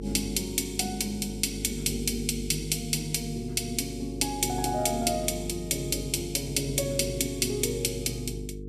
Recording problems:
hum; 50 Hz, harmonics up to 450 Hz, SNR 9 dB

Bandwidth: 14.5 kHz